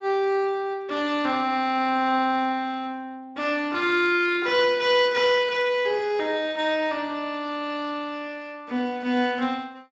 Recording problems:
lossy compression; Speex, log-spectral distance 2 dB, nothing above 7.3 kHz

